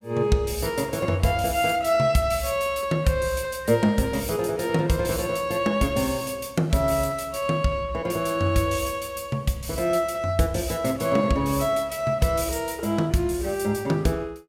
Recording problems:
none

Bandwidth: 16 kHz